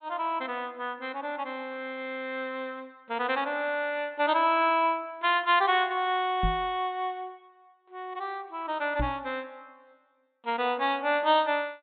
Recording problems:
treble cut off; nothing above 4 kHz
knock on the microphone; at 6.5 s and at 9 s; peak +2 dB vs average level

